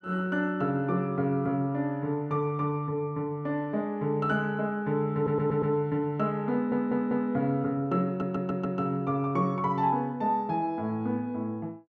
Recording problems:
stutter; at 5 s, at 6.5 s and at 8 s

